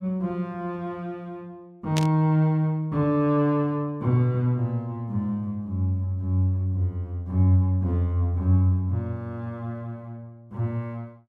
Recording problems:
burst of static; at 2 s; peak 0 dB vs average level

